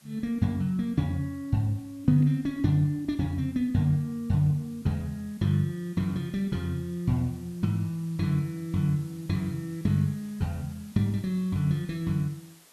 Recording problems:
hiss; slope -1 dB per octave, SNR 26 dB

